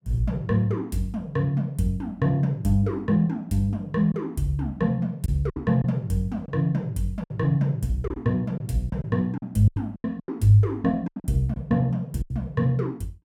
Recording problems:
lost packets; 6% of the sound replaced, filled with silence

